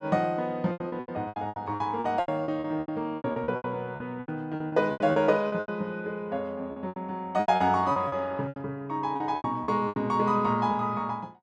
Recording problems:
lost packets; 18% of the sound replaced, filled with repeated pitch periods

